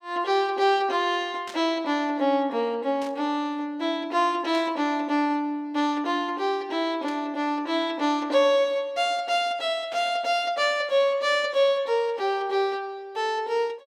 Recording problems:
burst of static; 5 times, first at 1.5 s; peak -11 dB vs average level

